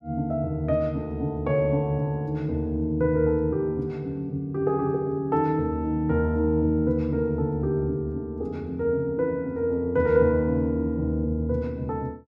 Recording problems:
none

